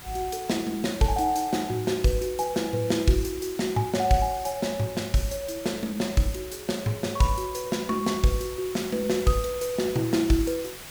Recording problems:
hiss; slope -1 dB per octave, SNR 14 dB

